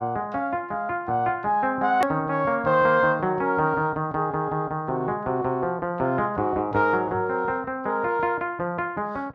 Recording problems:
edit click; at 2 s

